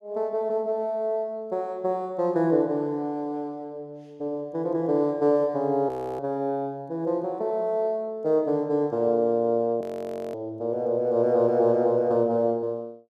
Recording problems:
audio freezing; at 6 s and at 10 s for 0.5 s

